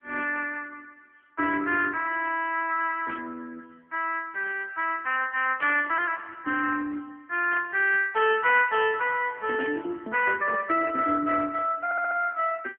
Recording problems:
phone line; 260 Hz to 3.2 kHz, AMR-NB
static burst; 4 times, first at 3 s; peak -8 dB vs average level
stutter; at 12 s

